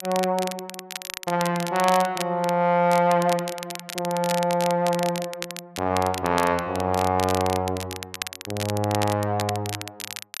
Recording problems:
crackle; vinyl, SNR 10 dB

